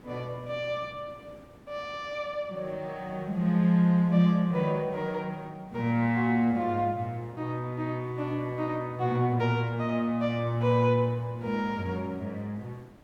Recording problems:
hiss; slope -8 dB per octave, SNR 24 dB

